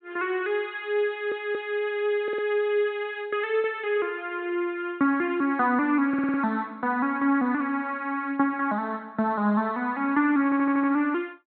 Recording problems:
low-pass filter; nothing above 4.1 kHz
audio stuttering; 4 times, first at 1 s

